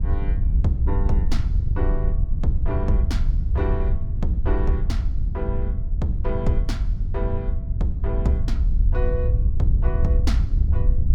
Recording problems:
wind noise; below 74 Hz, SNR -6 dB

